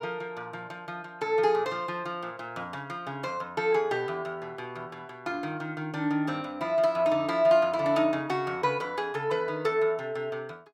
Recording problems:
none

